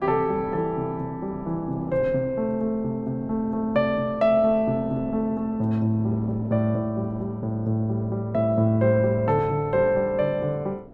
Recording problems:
wind on the microphone; below 460 Hz, SNR 18 dB

